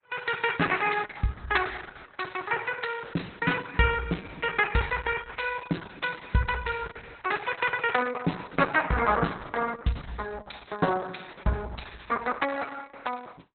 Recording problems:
lossy codec; Opus, log-spectral distance 6 dB, nothing above 4 kHz

